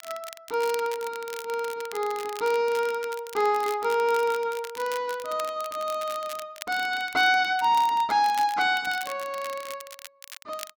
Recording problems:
crackling; vinyl, SNR 16 dB

